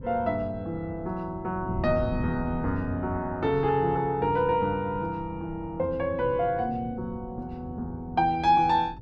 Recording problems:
wind on the microphone; below 200 Hz, SNR 12 dB

